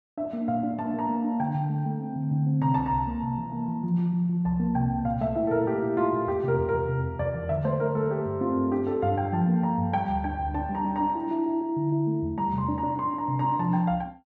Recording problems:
none

